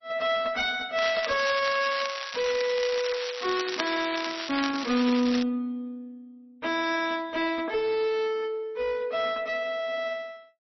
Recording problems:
codec artefacts; MP3, log-spectral distance 7 dB, nothing above 5.7 kHz
distortion; hard clipping, uneven, signal-to-distortion ratio 11 dB
crackle; from 1 to 5.5 s; loose cable, SNR 6 dB

